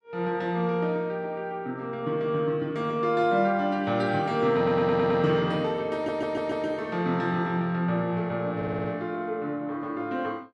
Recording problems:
stutter; at 4.5 s, at 6 s and at 8.5 s

